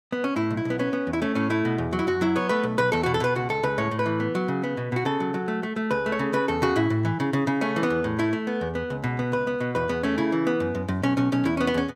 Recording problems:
none

